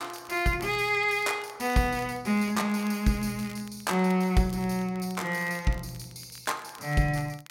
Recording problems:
crackling; vinyl, SNR 23 dB

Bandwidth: 16 kHz